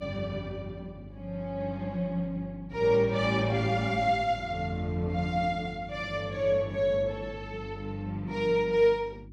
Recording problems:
electrical hum; 50 Hz, harmonics up to 350 Hz, SNR 17 dB

